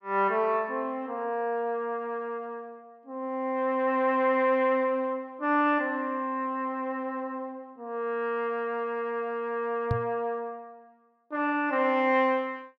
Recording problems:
microphone bump; at 10 s; peak +3 dB vs average level

